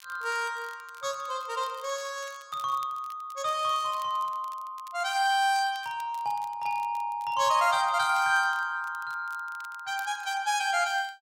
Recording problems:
crackling; vinyl, SNR 25 dB

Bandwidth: 16 kHz